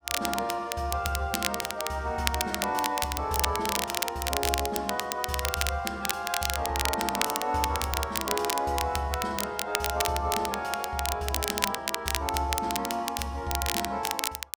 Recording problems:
crackling; vinyl, SNR 1 dB

